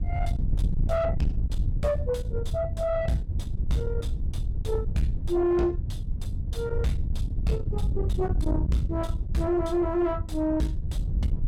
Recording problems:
distortion; soft clipping, signal-to-distortion ratio 7 dB
wind noise; below 100 Hz, SNR 2 dB

